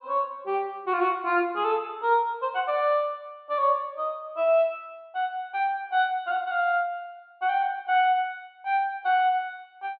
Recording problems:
low-pass filter; nothing above 4.6 kHz

